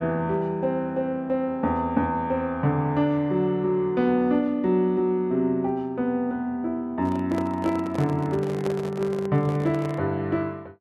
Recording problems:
handling noise; from 7 to 10 s; peak -4 dB vs average level

